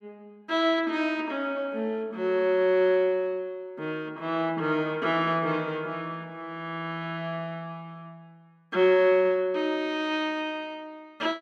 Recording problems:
none

